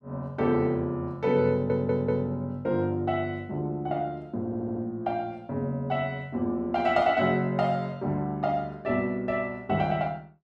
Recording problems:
stutter; at 1.5 s and at 4.5 s

